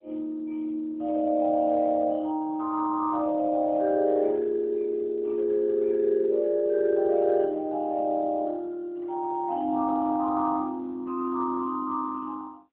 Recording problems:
phone line; 240 Hz to 2.3 kHz, AMR-NB

